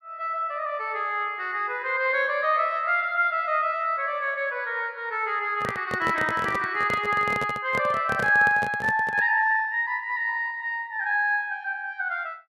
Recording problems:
handling noise; from 5.5 to 9.5 s; peak -4 dB vs average level

